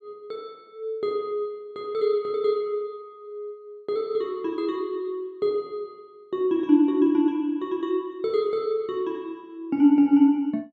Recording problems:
none

